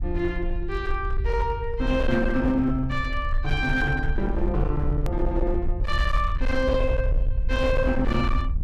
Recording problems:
distortion; hard clipping, uneven, signal-to-distortion ratio 12 dB
rumble; below 62 Hz, SNR 3 dB
hard cut with a click; at 5 s

